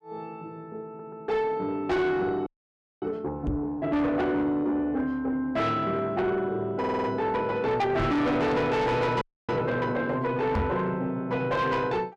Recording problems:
distorted audio; soft clipping, signal-to-distortion ratio 7 dB
audio stuttering; at 1 s and at 7 s
audio freezing; at 2.5 s for 0.5 s and at 9 s
knock on the microphone; at 3.5 s, at 8 s and at 11 s; peak +4 dB vs average level

